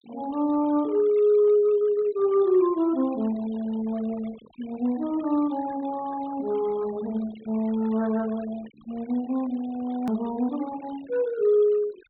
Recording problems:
treble cut off; nothing above 4 kHz
noise reduction artefacts; signal-to-artefact ratio 23 dB
edit click; at 10 s

